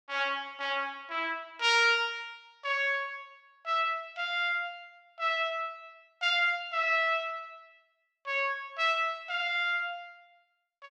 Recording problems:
none

